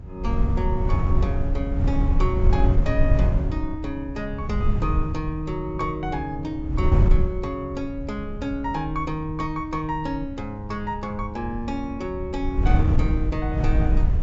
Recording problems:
treble cut off; nothing above 8 kHz
low-frequency rumble; below 100 Hz, SNR 10 dB
wind noise; below 92 Hz, SNR -5 dB

